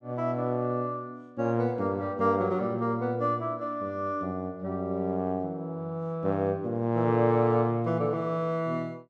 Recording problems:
none

